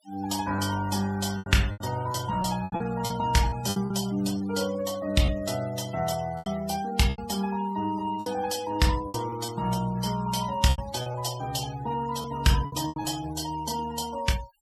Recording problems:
denoising artefacts; signal-to-artefact ratio 15 dB
lost packets; 8% of the sound replaced, filled with repeated pitch periods

